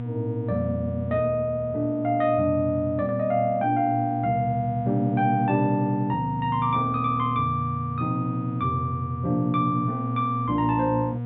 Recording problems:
low-pass filter; nothing above 4 kHz
hum; 60 Hz, harmonics up to 960 Hz, SNR 7 dB

